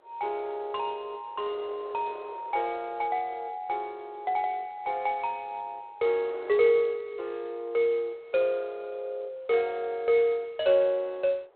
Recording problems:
phone line; 340 Hz to 3.5 kHz, G.726
wind noise; below 860 Hz, SNR 24 dB

